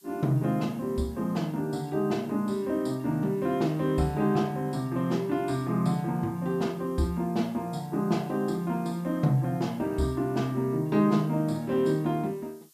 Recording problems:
background hiss; SNR 28 dB

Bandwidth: 14.5 kHz